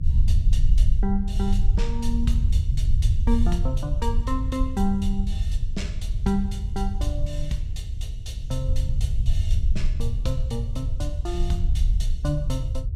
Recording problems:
electrical hum; 60 Hz, harmonics up to 480 Hz, SNR 25 dB
low-frequency rumble; below 70 Hz, SNR -4 dB

